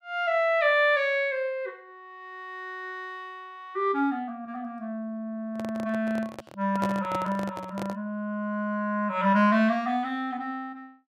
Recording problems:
microphone handling noise; from 5.5 to 8 s; peak -1 dB vs average level

